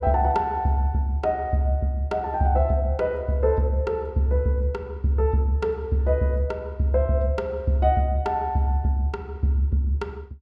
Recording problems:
none

